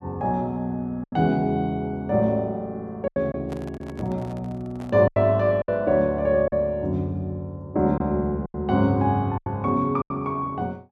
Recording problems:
lost packets; 6% of the sound replaced, filled with silence
microphone handling noise; from 3.5 to 5 s; peak -10 dB vs average level

